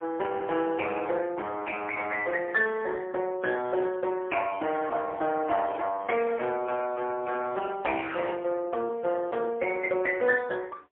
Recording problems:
telephone audio; 320 Hz to 3.3 kHz, AMR-NB, then MP3

